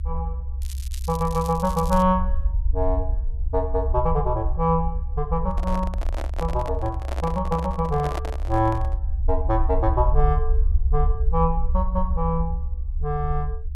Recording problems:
rumble; below 68 Hz, SNR 2 dB
crackling; from 0.5 to 2 s; loose cable, SNR 16 dB
handling noise; from 5.5 to 9 s; peak -2 dB vs average level

